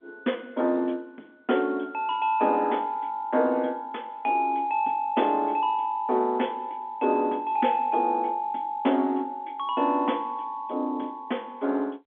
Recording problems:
telephone audio; 220 Hz to 3.6 kHz, G.711

